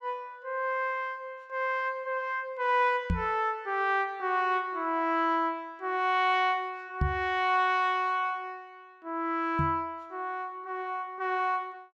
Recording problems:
microphone thump; at 3 s, at 7 s and at 9.5 s; peak +5 dB vs average level

